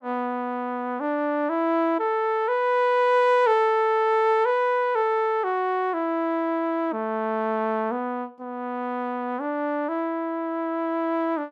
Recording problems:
none

